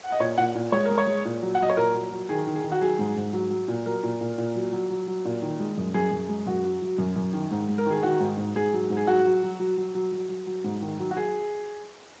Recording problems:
lossy compression; AAC, then Speex, log-spectral distance 5 dB
background hiss; slope -3 dB per octave, SNR 22 dB

